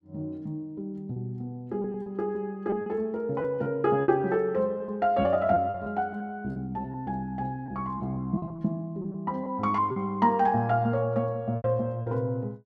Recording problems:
packet loss; 7% of the sound replaced, filled with repeated pitch periods

